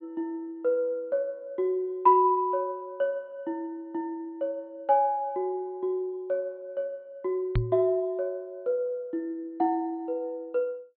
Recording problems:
low-pass filter; nothing above 4.4 kHz
microphone bump; at 7.5 s; peak +6 dB vs average level

